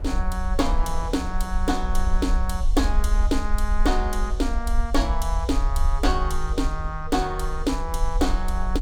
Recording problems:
rumble; below 52 Hz, SNR 0 dB
wind on the microphone; below 470 Hz, SNR 19 dB

